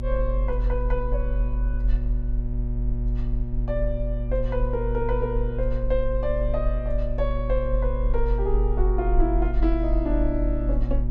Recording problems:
electrical hum; 60 Hz, harmonics up to 600 Hz, SNR 5 dB
rumble; below 46 Hz, strongest tone 46 Hz, SNR -2 dB

